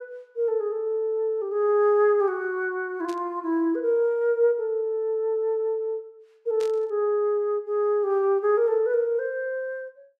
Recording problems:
burst of static; at 3 s and at 6.5 s; peak -14 dB vs average level

